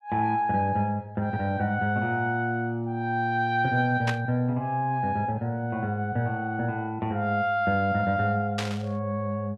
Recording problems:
static burst; at 4 s and at 8.5 s; peak 0 dB vs average level

